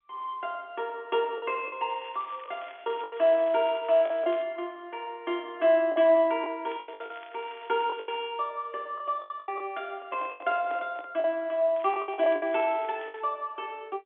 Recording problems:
phone line; 260 Hz to 3.5 kHz, G.711
lost packets; 9% of the sound replaced, filled with the last packet
crackling; from 2 to 4.5 s, from 6.5 to 8 s and from 12 to 13 s; loose cable, SNR 23 dB
handling noise; from 10 to 11 s; peak -10 dB vs average level

